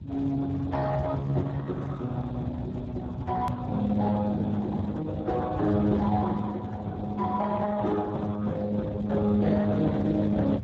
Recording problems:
lossy compression; Opus, then Speex, log-spectral distance 3 dB, nothing above 13.1 kHz
hum; 50 Hz, harmonics up to 550 Hz, SNR 25 dB
rumble; below 140 Hz, SNR 10 dB
click at an edit; at 3.5 s

